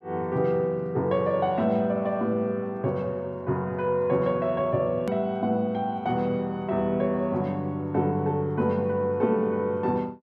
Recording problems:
edit click; at 5 s

